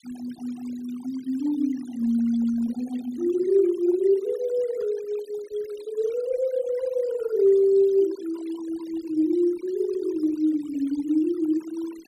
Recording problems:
noise reduction artefacts; signal-to-artefact ratio 23 dB

